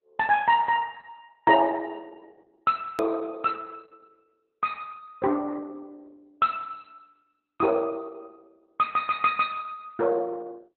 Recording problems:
lossy codec; Opus, log-spectral distance 3 dB, nothing above 15.1 kHz
click at an edit; at 3 s

